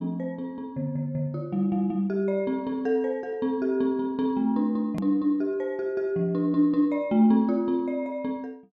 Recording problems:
hard cut with a click; at 5 s

